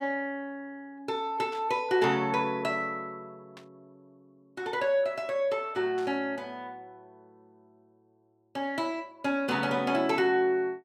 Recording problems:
static burst; at 1.5 s, at 3.5 s and at 6 s; peak -14 dB vs average level

